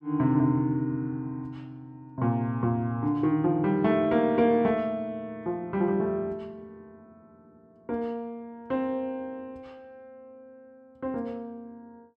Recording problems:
none

